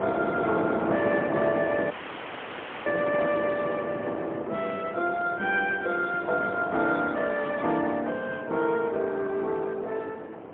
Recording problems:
phone line; 240 Hz to 3.4 kHz, AMR-NB, then MP3
wind noise; below 740 Hz, SNR 7 dB
audio cutting out; at 2 s for 1 s

